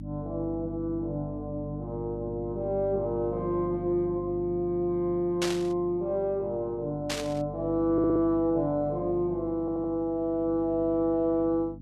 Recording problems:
hum; 50 Hz, harmonics up to 300 Hz, SNR 12 dB
static burst; at 5.5 s and at 7 s; peak +1 dB vs average level
audio stuttering; at 8 s and at 9.5 s

